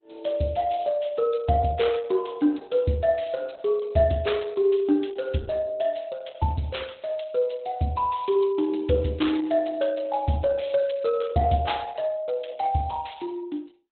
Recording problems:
lossy compression; Opus, log-spectral distance 5 dB, nothing above 4 kHz

